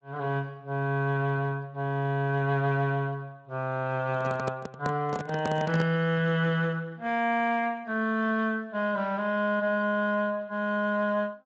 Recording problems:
lossy compression; Speex, log-spectral distance 2 dB
microphone handling noise; from 4 to 6 s; peak -2 dB vs average level

